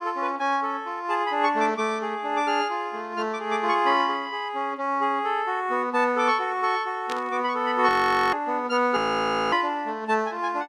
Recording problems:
static burst; at 7 s; peak -7 dB vs average level
frozen audio; at 8 s and at 9 s for 0.5 s

